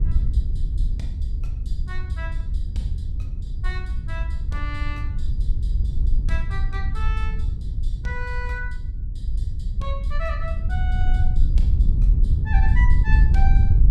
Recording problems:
wind noise; below 68 Hz, SNR -10 dB

